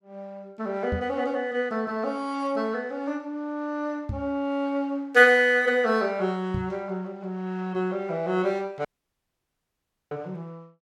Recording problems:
microphone bump; at 1 s, at 4 s and at 6.5 s; peak -1 dB vs average level
audio cutting out; at 9 s for 1.5 s

